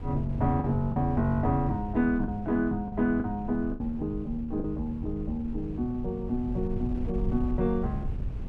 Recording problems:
wind noise; below 110 Hz, SNR 8 dB
lost packets; 4% of the sound replaced, filled with the last packet

